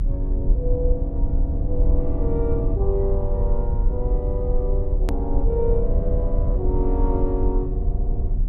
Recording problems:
low-frequency rumble; below 64 Hz, strongest tone 34 Hz, SNR -4 dB
edit click; at 5 s

